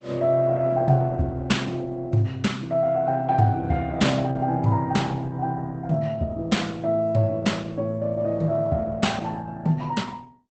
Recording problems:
lossy compression; Opus, log-spectral distance 3 dB, nothing above 8.2 kHz

